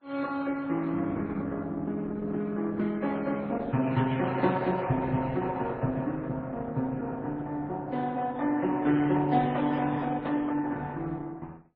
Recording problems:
lossy compression; Opus, then MP3, log-spectral distance 3 dB

